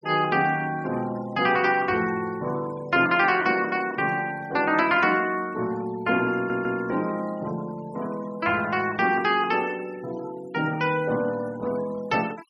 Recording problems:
noise reduction artefacts; signal-to-artefact ratio 20 dB
stutter; at 6.5 s

